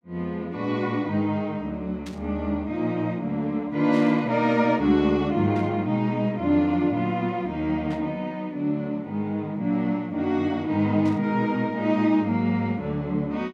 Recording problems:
static burst; 5 times, first at 2 s; peak -13 dB vs average level

